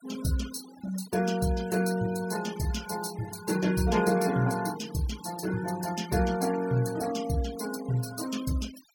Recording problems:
denoising artefacts; signal-to-artefact ratio 14 dB

